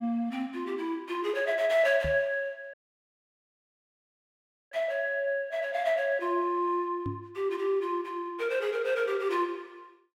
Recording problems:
knock on the microphone; at 2 s and at 7 s; peak -2 dB vs average level
dropout; at 2.5 s for 2 s

